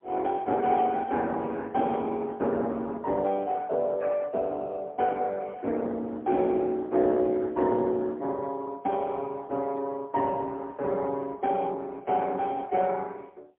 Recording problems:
phone line; 280 Hz to 2.3 kHz, AMR-NB, then MP3

